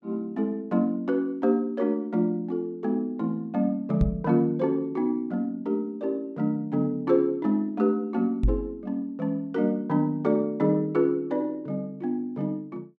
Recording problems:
knock on the microphone; at 4 s and at 8.5 s; peak +6 dB vs average level

